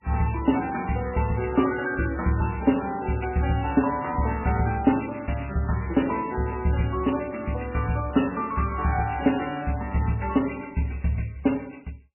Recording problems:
lossy compression; MP3, log-spectral distance 7 dB, nothing above 2.7 kHz

